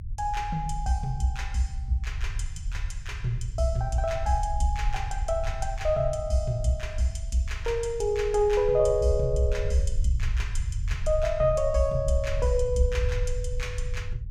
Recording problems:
low-frequency rumble; below 74 Hz, SNR 6 dB

